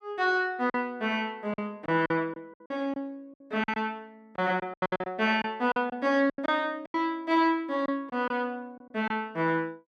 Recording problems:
lost packets; 11% of the sound replaced, filled with silence

